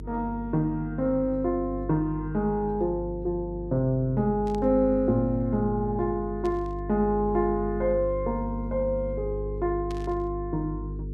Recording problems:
electrical hum; 50 Hz, harmonics up to 450 Hz, SNR 10 dB
static burst; at 4.5 s, at 6.5 s and at 10 s; peak -13 dB vs average level

